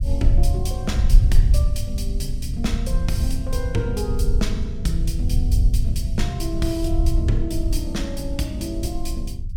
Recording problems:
low-frequency rumble; below 72 Hz, SNR -4 dB

